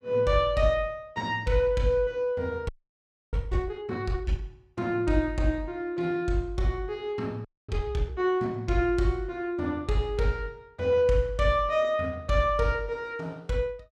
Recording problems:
audio freezing; at 2.5 s for 0.5 s and at 7.5 s

